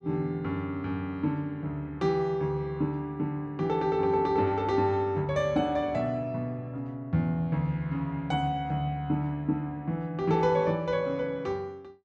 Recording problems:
none

